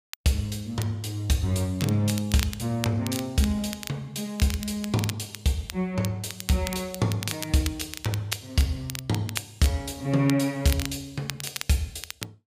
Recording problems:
crackling; vinyl, SNR 10 dB

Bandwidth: 15 kHz